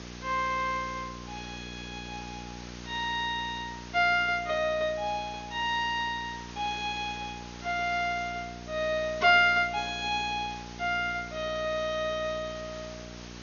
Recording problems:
lossy codec; MP2, log-spectral distance 10 dB, nothing above 6.7 kHz
hum; 60 Hz, harmonics up to 600 Hz, SNR 16 dB
hiss; SNR 17 dB

